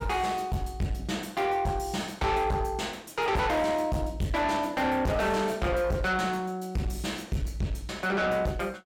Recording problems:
distortion; soft clipping, signal-to-distortion ratio 6 dB

